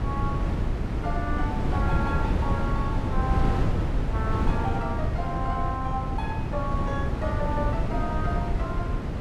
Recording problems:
wind on the microphone; below 210 Hz, SNR -5 dB

